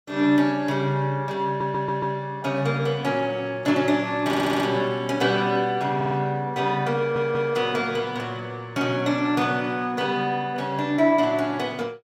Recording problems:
audio stuttering; 4 times, first at 1.5 s

